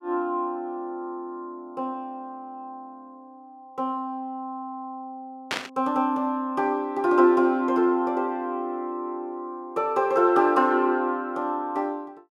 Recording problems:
burst of static; at 5.5 s; peak +2 dB vs average level

